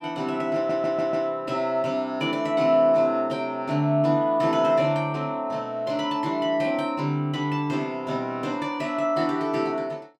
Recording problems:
stutter; at 0.5 s

